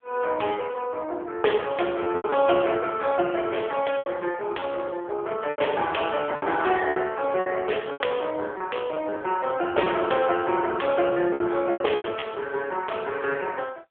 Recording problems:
phone line; 300 Hz to 3.4 kHz, AMR-NB
lost packets; 7% of the sound replaced, filled with repeated pitch periods

